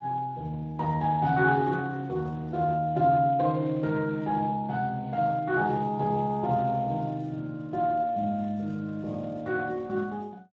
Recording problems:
codec artefacts; Speex, log-spectral distance 2 dB

